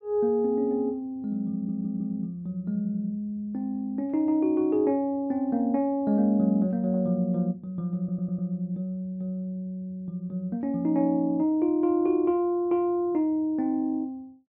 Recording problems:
treble cut off; nothing above 6.3 kHz
audio stuttering; at 1.5 s and at 8 s

